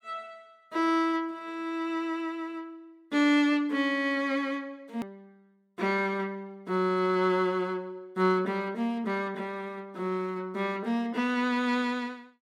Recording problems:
click at an edit; at 5 s

